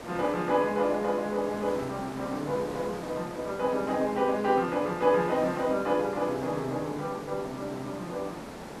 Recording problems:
hiss; slope -7 dB per octave, SNR 11 dB

